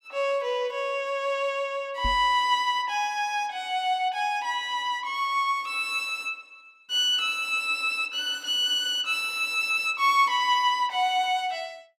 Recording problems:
microphone bump; at 2 s; peak -4 dB vs average level

